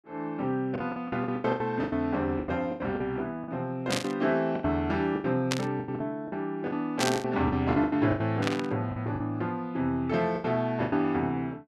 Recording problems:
packet loss; 14% of the sound replaced, filled with the last packet
burst of static; 4 times, first at 4 s; peak +5 dB vs average level

